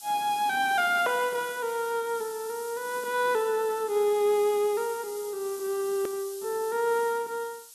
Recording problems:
hiss; SNR 15 dB
hard cut with a click; at 6 s

